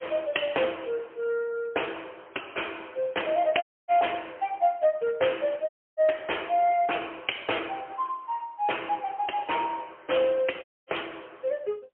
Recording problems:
telephone audio; 260 Hz to 3.2 kHz, AMR-NB, then MP3
audio cutting out; at 3.5 s, at 5.5 s and at 11 s

